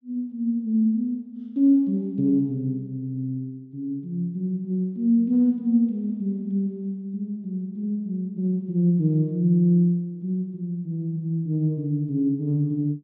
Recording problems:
none

